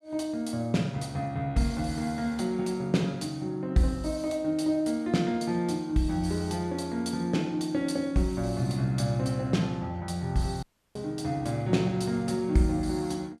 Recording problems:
audio cutting out; at 11 s

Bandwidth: 14 kHz